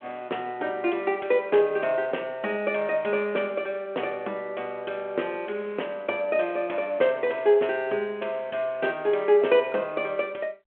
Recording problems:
phone line; 300 Hz to 3.3 kHz, G.726

